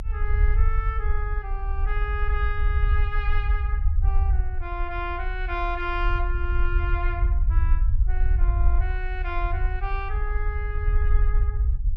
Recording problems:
rumble; below 60 Hz, SNR -7 dB

